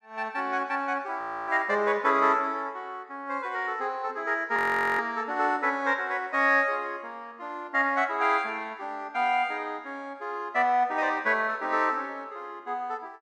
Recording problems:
frozen audio; at 1 s and at 4.5 s

